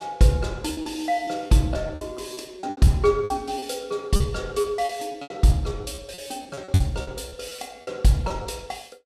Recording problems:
packet loss; 14% of the sound replaced, filled with repeated pitch periods

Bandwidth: 14.5 kHz